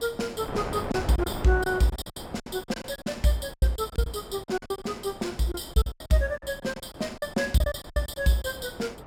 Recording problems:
wind on the microphone; below 870 Hz, SNR 12 dB
packet loss; 14% of the sound replaced, filled with silence

